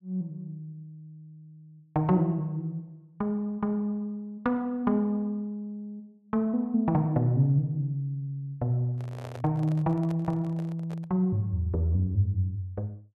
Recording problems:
microphone handling noise; from 9 to 11 s; peak -10 dB vs average level

